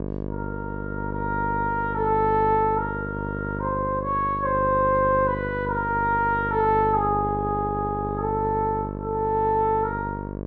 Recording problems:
electrical hum; 50 Hz, harmonics up to 1.1 kHz, SNR 7 dB

